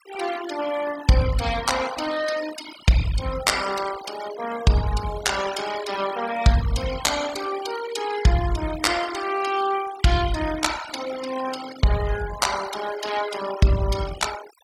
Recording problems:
denoising artefacts; signal-to-artefact ratio 11 dB

